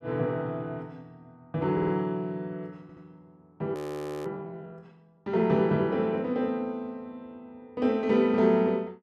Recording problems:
audio stuttering; at 1.5 s and at 3 s
frozen audio; at 4 s for 0.5 s

